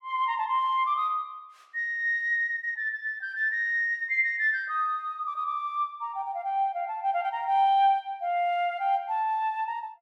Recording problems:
none

